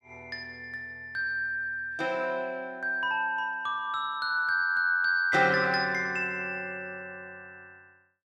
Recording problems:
none

